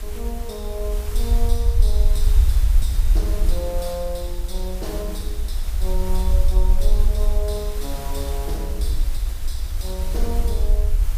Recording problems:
hiss; slope -3 dB per octave, SNR 7 dB
rumble; below 54 Hz, SNR -8 dB

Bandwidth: 15 kHz